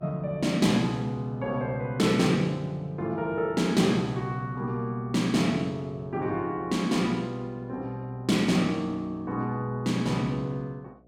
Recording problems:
hum; 60 Hz, harmonics up to 720 Hz, SNR 27 dB

